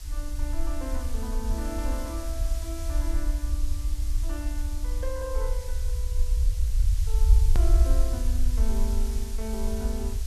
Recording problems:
background hiss; slope +1 dB per octave, SNR 6 dB
low-frequency rumble; below 58 Hz, SNR -9 dB
hard cut with a click; at 7.5 s

